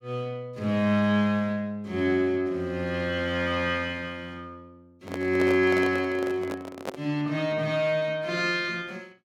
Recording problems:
microphone handling noise; from 5 to 7 s; peak -2 dB vs average level

